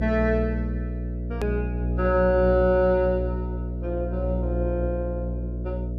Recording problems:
treble missing; nothing above 8 kHz
hum; 60 Hz, harmonics up to 660 Hz, SNR 4 dB
hard cut with a click; at 1.5 s

